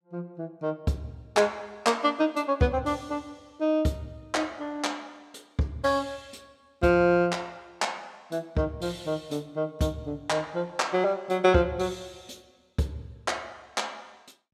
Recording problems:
none

